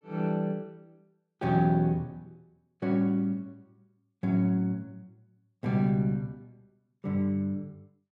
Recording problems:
none

